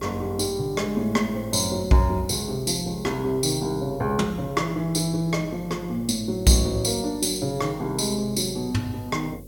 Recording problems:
hum; 50 Hz, harmonics up to 550 Hz, SNR 19 dB
background hiss; slope +4 dB per octave, SNR 27 dB

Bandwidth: 17 kHz